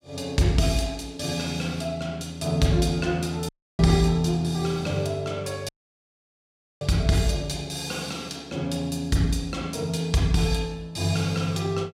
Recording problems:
audio cutting out; at 3.5 s and at 5.5 s for 1 s

